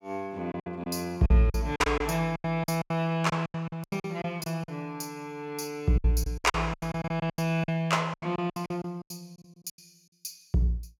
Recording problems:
packet loss; 17% of the sound replaced, filled with silence

